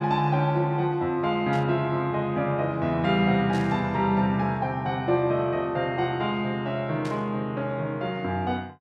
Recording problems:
static burst; at 1.5 s, at 3.5 s and at 7 s; peak -12 dB vs average level

